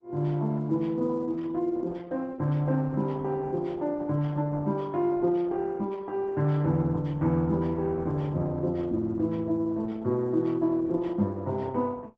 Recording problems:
lossy codec; Opus, log-spectral distance 2 dB

